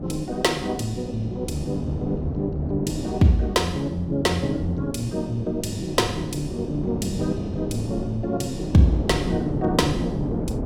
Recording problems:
wind on the microphone; below 360 Hz, SNR 7 dB

